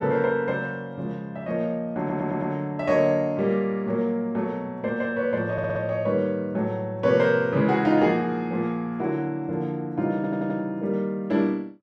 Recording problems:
audio stuttering; at 2 s, at 5.5 s and at 10 s

